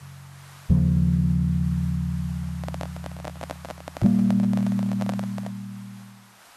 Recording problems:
hiss; SNR 25 dB
handling noise; from 2.5 to 5.5 s; peak -5 dB vs average level

